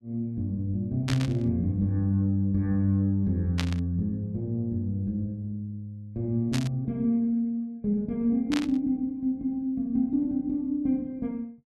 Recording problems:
burst of static; 4 times, first at 1 s; peak +1 dB vs average level

